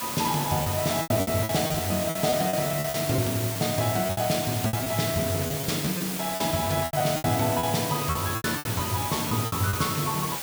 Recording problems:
hiss; slope -1 dB per octave, SNR 4 dB
lost packets; 14% of the sound replaced, filled with repeated pitch periods

